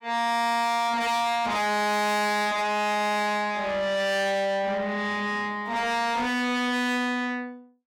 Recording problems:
distortion; soft clipping, signal-to-distortion ratio 7 dB

